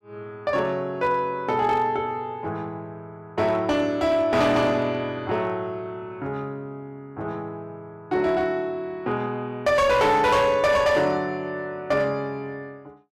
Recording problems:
distortion; hard clipping, signal-to-distortion ratio 12 dB

